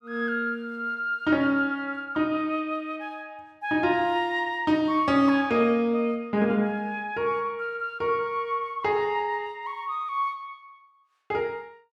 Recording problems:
none

